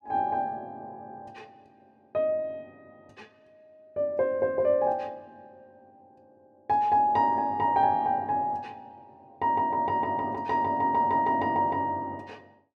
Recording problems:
none

